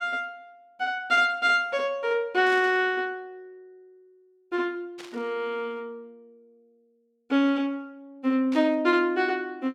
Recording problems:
static burst; at 2.5 s, at 5 s and at 8.5 s; peak -12 dB vs average level

